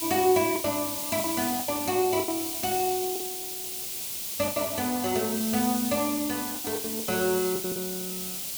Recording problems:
hiss; SNR 2 dB
lost packets; 10% of the sound replaced, filled with the last packet

